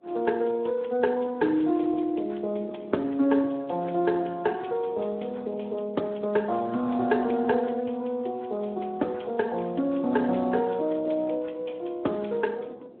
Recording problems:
telephone audio; 190 Hz to 3.6 kHz, Speex
wind noise; below 520 Hz, SNR 23 dB

